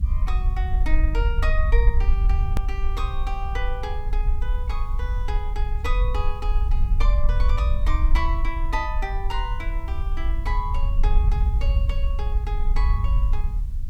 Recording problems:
background hiss; slope -3 dB per octave, SNR 27 dB
rumble; below 56 Hz, SNR -8 dB
click at an edit; at 2.5 s

